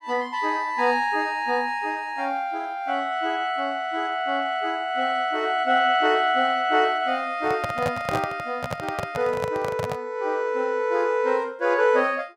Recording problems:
handling noise; from 7.5 to 10 s; peak -1 dB vs average level

